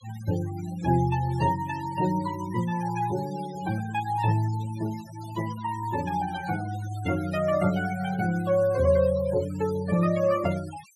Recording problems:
denoising artefacts; signal-to-artefact ratio 18 dB

